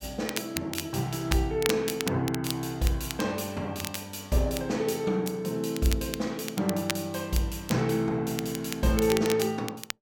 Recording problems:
crackle; vinyl, SNR 8 dB

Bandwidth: 17 kHz